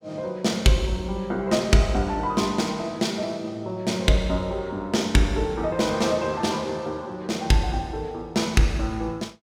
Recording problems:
none

